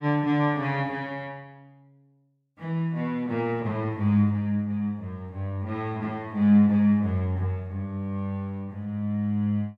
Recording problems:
none

